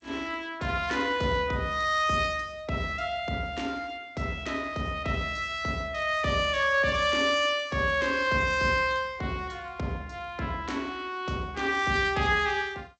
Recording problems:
lossy compression; G.722, log-spectral distance 2 dB, nothing above 7.6 kHz

